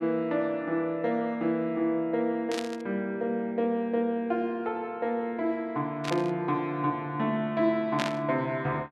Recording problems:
static burst; at 2.5 s, at 6 s and at 8 s; peak +1 dB vs average level

